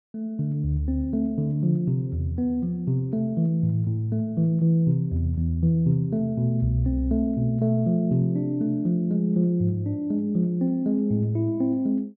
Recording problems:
none

